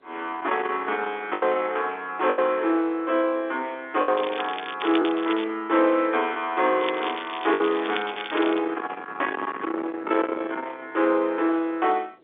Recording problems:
phone line; 260 Hz to 3.8 kHz, G.711
distortion; soft clipping, signal-to-distortion ratio 10 dB
wind noise; below 1.3 kHz, SNR 14 dB
lost packets; 3% of the sound replaced, filled with the last packet
crackle; from 4 to 5.5 s and from 7 to 8.5 s; loose cable, SNR 12 dB

